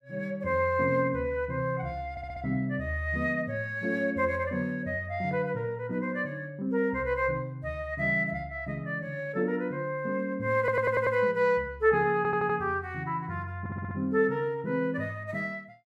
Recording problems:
audio stuttering; 4 times, first at 2 s

